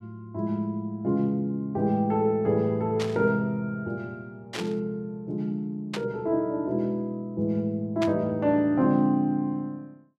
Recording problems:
burst of static; 4 times, first at 3 s; peak -3 dB vs average level

